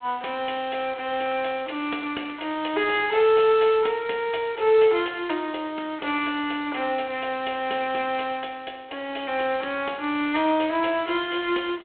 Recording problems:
phone line; 260 Hz to 3.4 kHz, G.726
crackling; from 1 to 3.5 s; loose cable, SNR 25 dB

